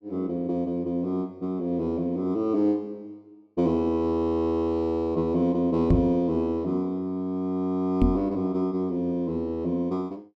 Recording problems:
microphone bump; at 6 s and at 8 s; peak +7 dB vs average level

